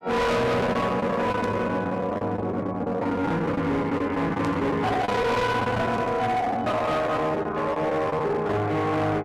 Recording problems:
distorted audio; hard clipping, signal-to-distortion ratio 7 dB
lost packets; 12% of the sound replaced, filled with the last packet
burst of static; at 1.5 s, at 4.5 s and at 6 s; peak -13 dB vs average level

